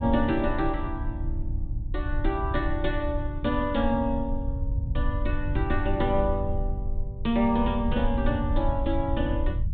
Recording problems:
treble cut off; nothing above 4 kHz
low-frequency rumble; below 82 Hz, SNR 3 dB

